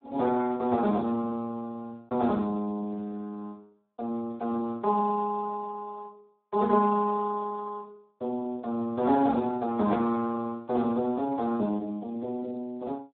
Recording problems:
phone line; 170 Hz to 2.1 kHz, Speex

